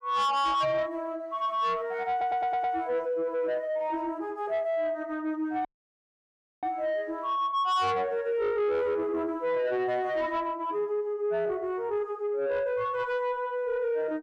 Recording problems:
distortion; soft clipping, signal-to-distortion ratio 10 dB
audio stuttering; at 2 s
audio cutting out; at 5.5 s for 1 s

